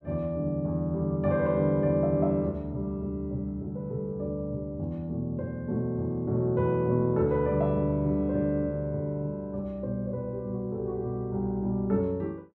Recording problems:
none

